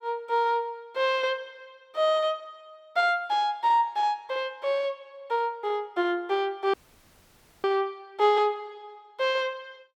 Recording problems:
dropout; at 6.5 s for 1 s

